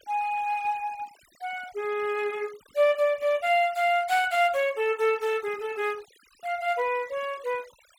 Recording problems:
denoising artefacts; signal-to-artefact ratio 23 dB

